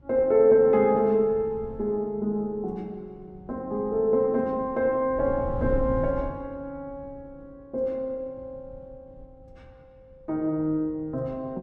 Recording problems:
wind noise; below 120 Hz, SNR 14 dB

